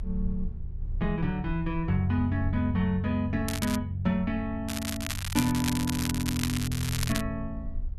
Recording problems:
low-frequency rumble; below 72 Hz, SNR 11 dB
crackling; at 3.5 s and from 4.5 to 7 s; loose cable, SNR 5 dB

